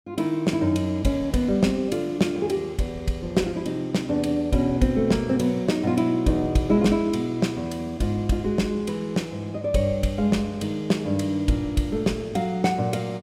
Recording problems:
none

